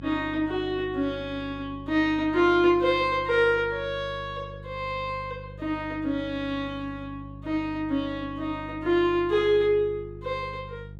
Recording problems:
electrical hum; 50 Hz, harmonics up to 500 Hz, SNR 16 dB

